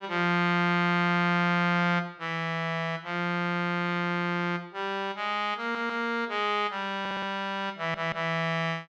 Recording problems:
stutter; at 5.5 s, at 7 s and at 8 s

